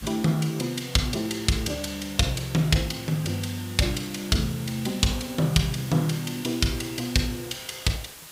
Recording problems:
background hiss; slope 0 dB per octave, SNR 15 dB

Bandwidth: 15.5 kHz